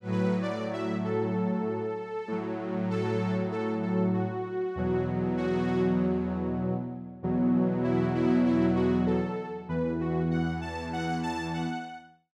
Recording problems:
none

